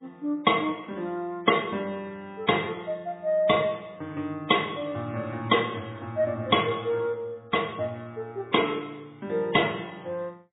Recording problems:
treble cut off; nothing above 3.7 kHz
codec artefacts; MP3, log-spectral distance 3 dB

